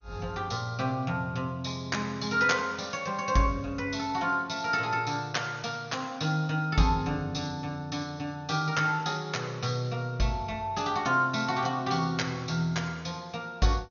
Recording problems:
lossy compression; MP2, log-spectral distance 5 dB, nothing above 6.5 kHz

